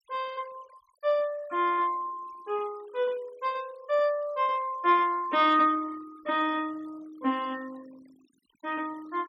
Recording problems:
noise reduction artefacts; signal-to-artefact ratio 25 dB

